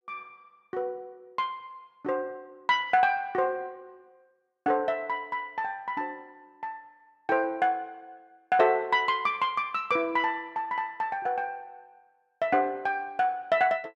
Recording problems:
none

